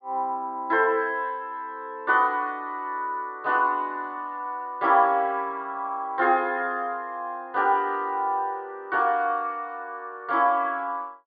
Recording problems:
treble cut off; nothing above 4.9 kHz

